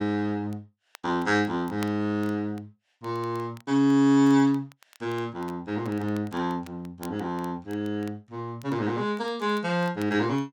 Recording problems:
crackle; vinyl, SNR 26 dB

